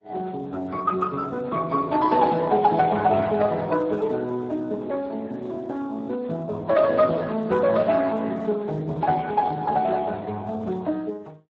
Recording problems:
codec artefacts; MP3, then Speex, log-spectral distance 3 dB

